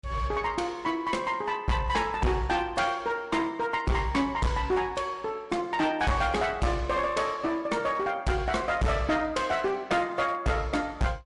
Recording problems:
codec artefacts; MP3, log-spectral distance 2 dB, nothing above 11 kHz
distorted audio; hard clipping, uneven, signal-to-distortion ratio 6 dB

